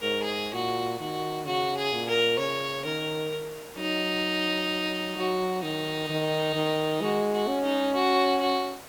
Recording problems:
hiss; slope -4 dB per octave, SNR 17 dB

